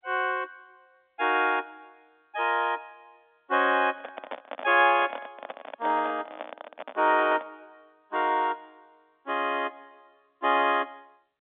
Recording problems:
telephone audio; 240 Hz to 3.6 kHz, G.711
handling noise; from 4 to 7.5 s; peak -6 dB vs average level

